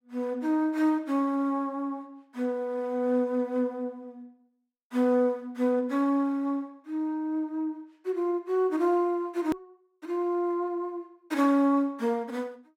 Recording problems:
hard cut with a click; at 9.5 s

